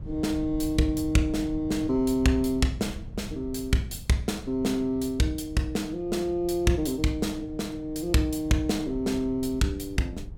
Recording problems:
wind on the microphone; below 120 Hz, SNR 15 dB

